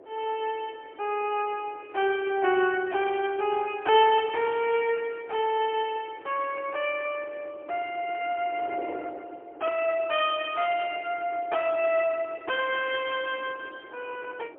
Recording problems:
phone line; 260 Hz to 3.2 kHz, AMR-NB, then MP3
wind noise; below 620 Hz, SNR 19 dB

